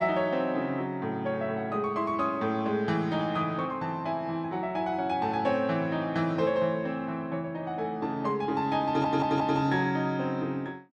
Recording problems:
stutter; at 9 s

